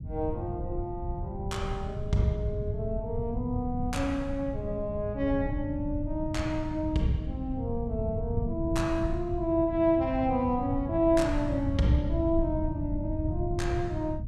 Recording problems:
rumble; below 130 Hz, SNR 5 dB

